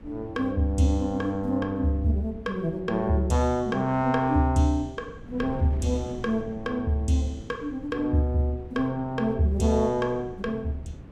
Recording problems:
wind noise; below 240 Hz, SNR 17 dB

